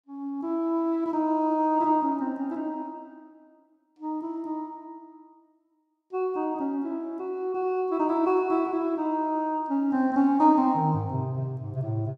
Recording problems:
none

